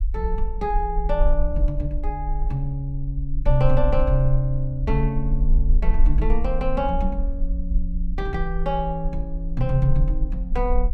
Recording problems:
low-frequency rumble; below 44 Hz, SNR 0 dB

